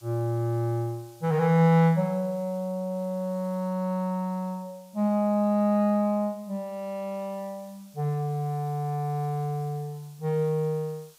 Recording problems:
hiss; SNR 28 dB

